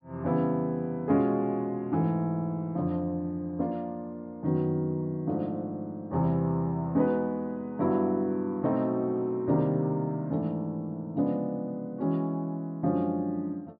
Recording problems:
treble missing; nothing above 5.5 kHz

